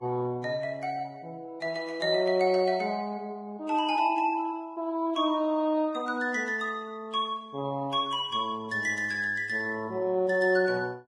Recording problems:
lossy compression; Vorbis, log-spectral distance 2 dB, nothing above 10.7 kHz

